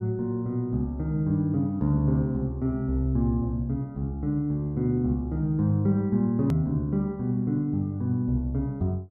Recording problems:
edit click; at 6.5 s

